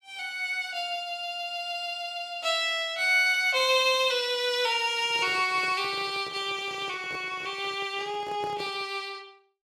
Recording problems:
handling noise; from 5 to 9 s; peak -9 dB vs average level

